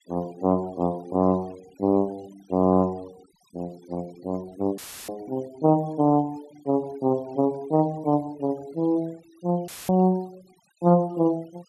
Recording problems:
noise reduction artefacts; signal-to-artefact ratio 27 dB
audio cutting out; at 5 s and at 9.5 s; filled with static

